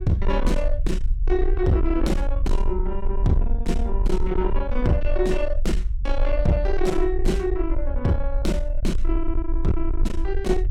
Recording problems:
distorted audio; soft clipping, signal-to-distortion ratio 11 dB
rumble; below 46 Hz, strongest tone 20 Hz, SNR 2 dB

